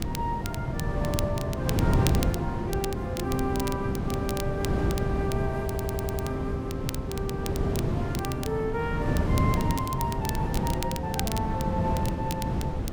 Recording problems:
wind noise; below 270 Hz, SNR -3 dB
crackling; vinyl, SNR 7 dB
audio stuttering; at 5.5 s

